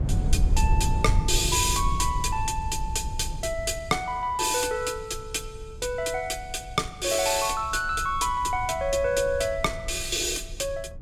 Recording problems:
wind noise; below 86 Hz, SNR 5 dB

